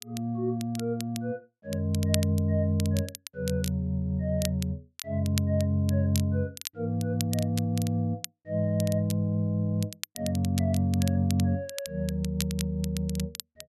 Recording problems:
crackling; vinyl, SNR 12 dB

